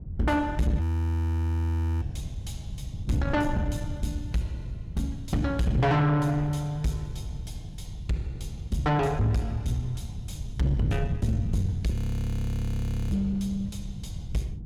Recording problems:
distorted audio; soft clipping, signal-to-distortion ratio 8 dB
wind noise; below 140 Hz, SNR 8 dB
audio freezing; at 1 s for 1 s and at 12 s for 1 s

